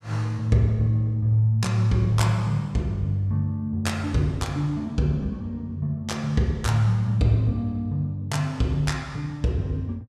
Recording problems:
none

